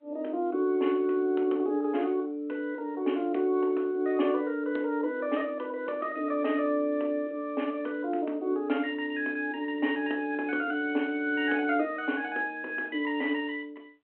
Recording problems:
phone line; 220 Hz to 3.2 kHz, G.726

